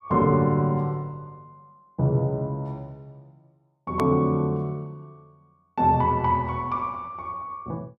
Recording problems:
hard cut with a click; at 4 s

